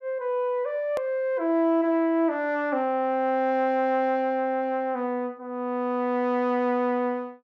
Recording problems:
click at an edit; at 1 s

